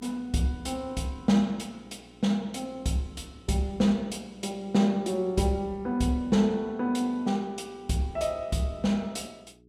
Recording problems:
electrical hum; 60 Hz, harmonics up to 420 Hz, SNR 27 dB

